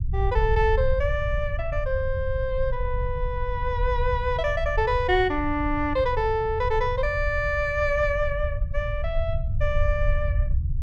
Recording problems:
rumble; below 78 Hz, SNR 4 dB

